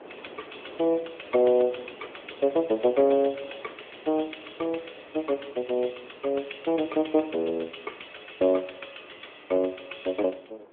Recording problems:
telephone audio; 300 Hz to 3.5 kHz, AMR-NB
wind on the microphone; below 840 Hz, SNR 22 dB

